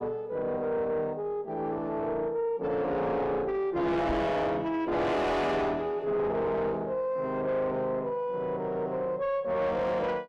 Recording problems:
distorted audio; soft clipping, signal-to-distortion ratio 6 dB
microphone bump; at 4 s; peak +1 dB vs average level

